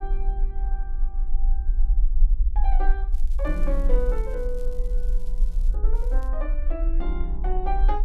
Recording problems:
low-frequency rumble; below 40 Hz, strongest tone 22 Hz, SNR -8 dB
crackle; from 3 to 6 s and at 6 s; loose cable, SNR 23 dB

